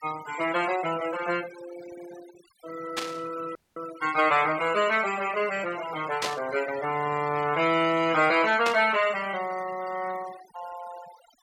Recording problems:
noise reduction artefacts; signal-to-artefact ratio 16 dB
static burst; at 3 s, at 6 s and at 8.5 s; peak 0 dB vs average level
dropout; at 3.5 s

